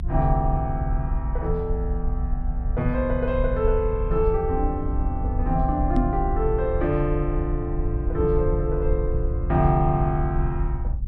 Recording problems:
low-frequency rumble; below 60 Hz, SNR 2 dB
knock on the microphone; at 6 s; peak +6 dB vs average level

